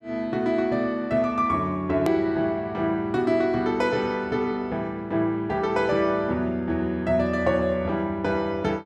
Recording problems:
edit click; at 2 s

